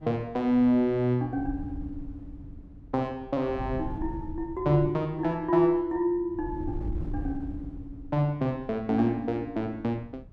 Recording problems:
wind noise; below 120 Hz, SNR 14 dB

